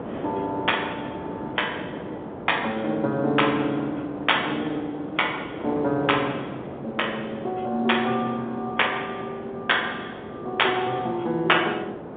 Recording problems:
phone line; 260 Hz to 3.6 kHz, G.711
wind on the microphone; below 650 Hz, SNR 10 dB

